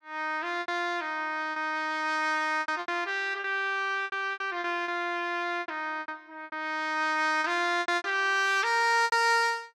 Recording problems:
lost packets; 11% of the sound replaced, filled with repeated pitch periods

